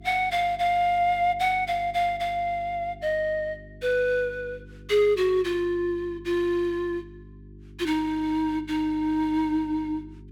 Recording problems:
hum; 50 Hz, harmonics up to 400 Hz, SNR 21 dB

